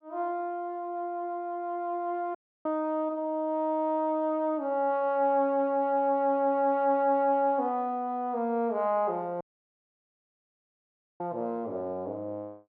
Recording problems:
audio cutting out; at 2.5 s and at 9.5 s for 2 s

